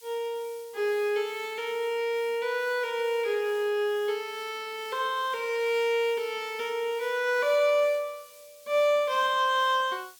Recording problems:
hiss; SNR 24 dB

